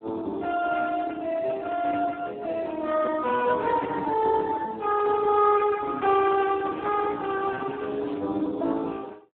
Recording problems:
telephone audio; 220 Hz to 2 kHz, Speex
crackling; from 5 to 8 s; loose cable, SNR 27 dB

